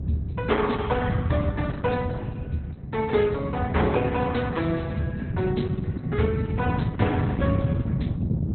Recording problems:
lossy codec; Opus, log-spectral distance 3 dB, nothing above 4 kHz
hum; 50 Hz, harmonics up to 1.1 kHz, SNR 23 dB
wind on the microphone; below 180 Hz, SNR 0 dB

